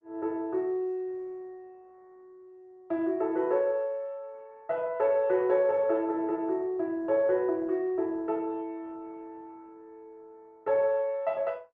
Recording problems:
lossy compression; Opus, log-spectral distance 2 dB

